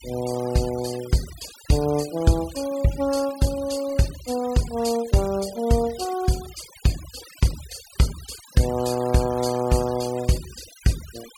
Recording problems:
denoising artefacts; signal-to-artefact ratio 15 dB

